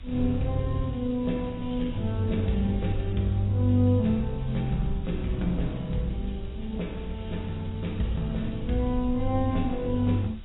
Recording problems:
lossy codec; AAC, log-spectral distance 5 dB, nothing above 3.8 kHz
hiss; SNR 27 dB
wind on the microphone; below 60 Hz, SNR 11 dB

